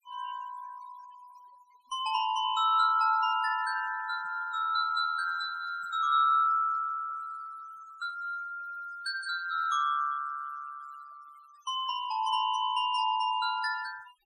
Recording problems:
noise reduction artefacts; signal-to-artefact ratio 22 dB
stutter; at 8.5 s

